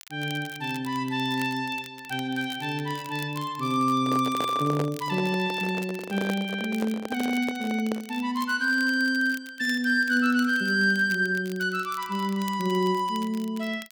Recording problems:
crackling; vinyl, SNR 20 dB
microphone handling noise; from 4 to 8 s; peak -2 dB vs average level

